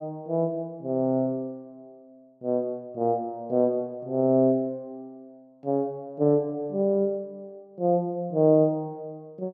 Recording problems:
none

